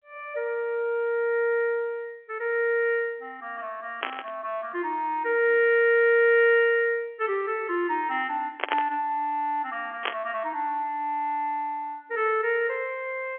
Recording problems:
telephone audio; 300 Hz to 3.5 kHz, G.711
static burst; at 4 s, at 8.5 s and at 10 s; peak +3 dB vs average level

